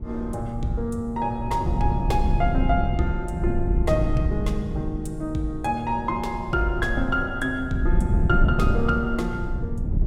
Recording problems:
wind on the microphone; below 130 Hz, SNR 1 dB

